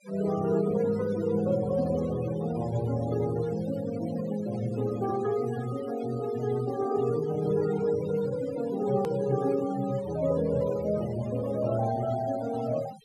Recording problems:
noise reduction artefacts; signal-to-artefact ratio 15 dB
click at an edit; at 9 s

